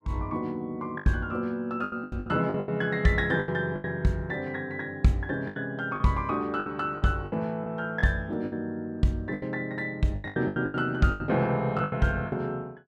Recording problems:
lost packets; 13% of the sound replaced, filled with the last packet

